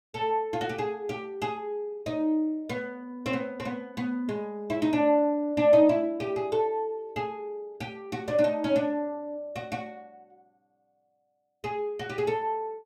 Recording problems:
none

